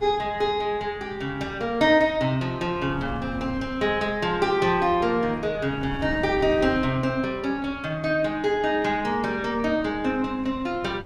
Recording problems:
wind on the microphone; below 240 Hz, SNR 17 dB

